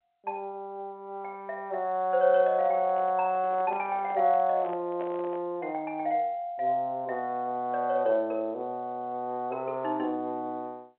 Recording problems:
phone line; 220 Hz to 3.7 kHz, G.711
handling noise; from 2.5 to 5.5 s; peak -8 dB vs average level

